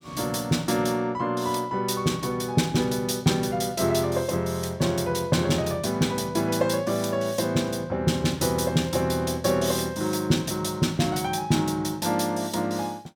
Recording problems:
none

